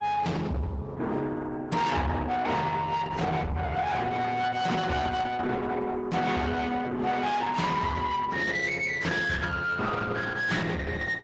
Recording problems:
lossy codec; AAC, then Opus, log-spectral distance 3 dB, nothing above 7.1 kHz
distorted audio; soft clipping, signal-to-distortion ratio 7 dB

